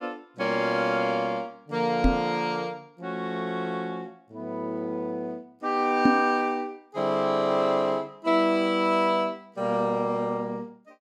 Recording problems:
microphone thump; at 2 s and at 6 s; peak +9 dB vs average level

